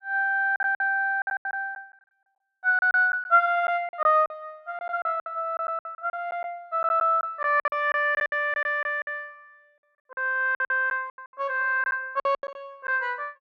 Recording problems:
packet loss; 14% of the sound replaced, filled with silence

